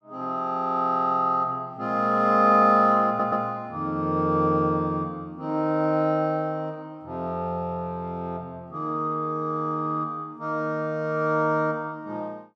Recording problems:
stutter; at 3 s

